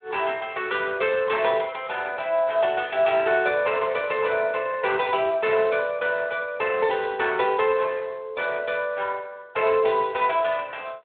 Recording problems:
phone line; 340 Hz to 3.6 kHz, Speex

